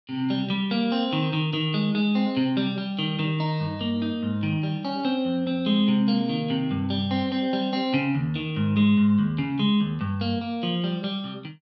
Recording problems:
none

